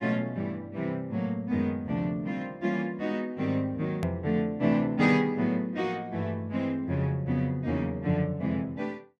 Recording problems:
edit click; at 4 s

